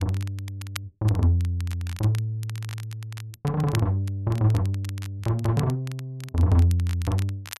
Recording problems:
crackle; vinyl, SNR 18 dB

